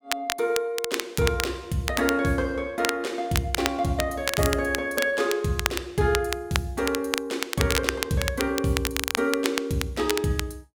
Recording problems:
crackle; vinyl, SNR 4 dB

